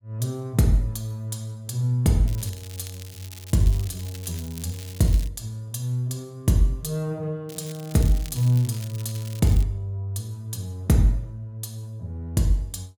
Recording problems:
crackling; from 2.5 to 5.5 s and from 7.5 to 9.5 s; loose cable, SNR 17 dB

